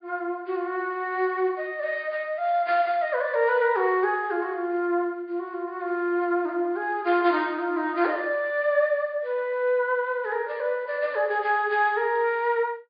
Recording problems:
low-pass filter; nothing above 4.9 kHz

